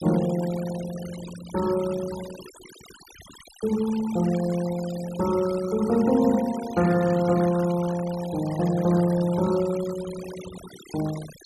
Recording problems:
denoising artefacts; signal-to-artefact ratio 16 dB

